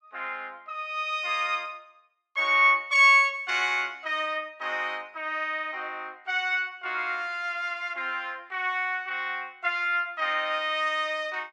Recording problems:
none

